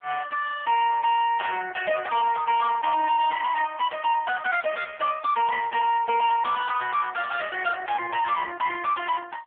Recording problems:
telephone audio; 320 Hz to 3.4 kHz, AMR-NB
distortion; hard clipping, uneven, signal-to-distortion ratio 6 dB

